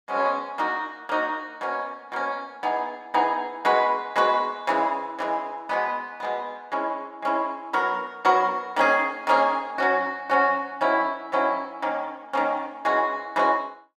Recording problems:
none

